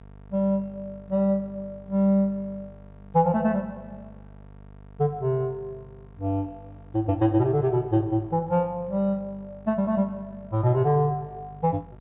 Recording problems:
treble missing; nothing above 4 kHz
hum; 50 Hz, harmonics up to 1.1 kHz, SNR 22 dB

